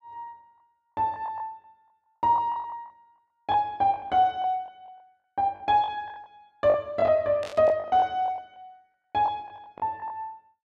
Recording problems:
lost packets; 12% of the sound replaced, filled with the last packet
static burst; at 7.5 s; peak -11 dB vs average level

